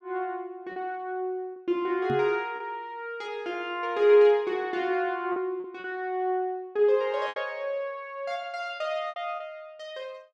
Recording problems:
packet loss; 5% of the sound replaced, filled with repeated pitch periods
knock on the microphone; at 2 s; peak -2 dB vs average level

